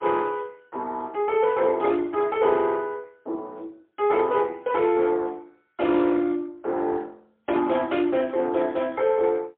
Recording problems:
telephone audio; 260 Hz to 3.5 kHz, AMR-NB, then MP3

